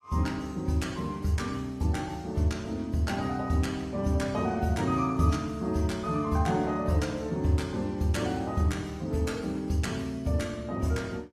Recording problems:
lossy compression; AAC, log-spectral distance 2 dB, nothing above 13.1 kHz

